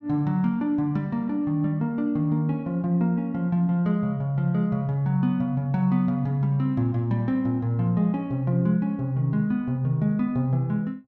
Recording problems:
none

